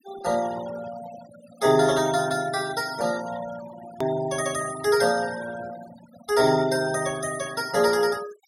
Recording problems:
noise reduction artefacts; signal-to-artefact ratio 16 dB
edit click; at 4 s

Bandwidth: 16 kHz